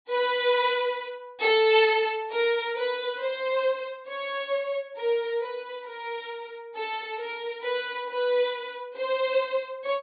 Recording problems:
low-pass filter; nothing above 4.6 kHz

